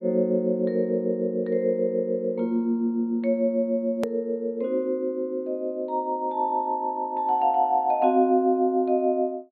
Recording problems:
treble missing; nothing above 4.4 kHz
hard cut with a click; at 4 s

